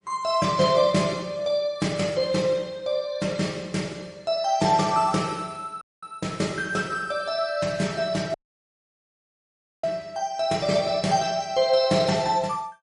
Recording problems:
codec artefacts; MP3, log-spectral distance 3 dB, nothing above 10.4 kHz
dropout; at 6 s and at 8.5 s for 1.5 s

